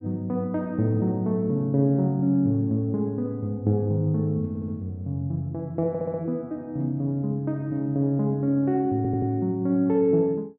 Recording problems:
stutter; at 4.5 s, at 6 s and at 9 s

